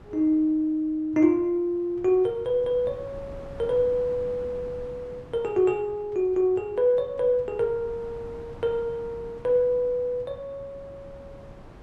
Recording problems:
wind noise; below 510 Hz, SNR 21 dB

